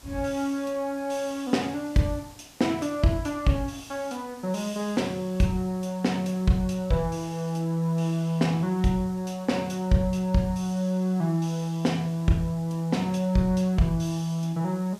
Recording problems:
hiss; slope -2 dB per octave, SNR 23 dB

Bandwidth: 14.5 kHz